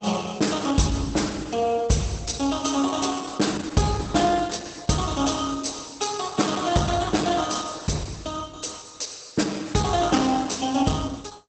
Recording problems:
codec artefacts; Opus, log-spectral distance 7 dB, nothing above 8 kHz

